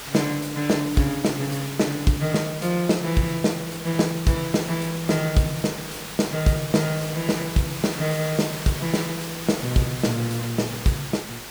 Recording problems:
hum; 50 Hz, harmonics up to 500 Hz, SNR 23 dB
hiss; SNR 9 dB

